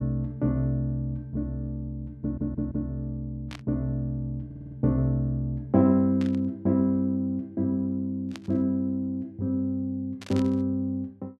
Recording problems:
stutter; at 2 s and at 4.5 s
burst of static; 4 times, first at 3.5 s; peak -10 dB vs average level

